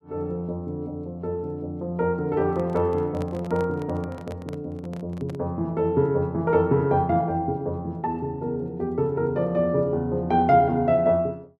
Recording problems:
handling noise; from 2.5 to 5.5 s; peak -8 dB vs average level

